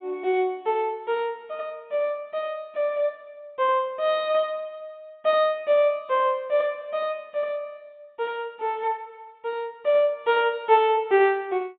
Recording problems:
treble cut off; nothing above 4 kHz

